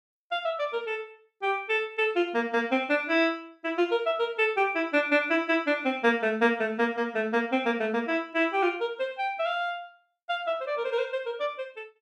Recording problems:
none

